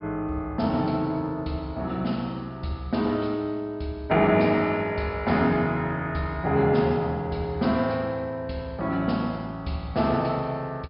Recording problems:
treble missing; nothing above 5.5 kHz

